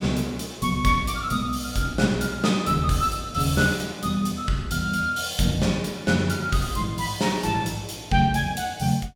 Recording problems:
none

